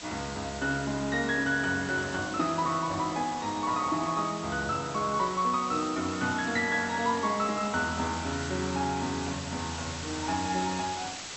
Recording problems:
treble missing; nothing above 8 kHz
hiss; slope 0 dB per octave, SNR 10 dB

